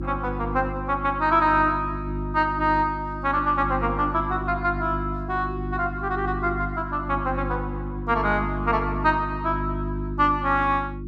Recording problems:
hum; 50 Hz, harmonics up to 350 Hz, SNR 7 dB

